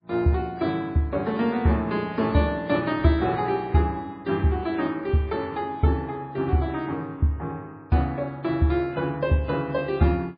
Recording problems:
lossy codec; MP3, log-spectral distance 2 dB, nothing above 4.5 kHz

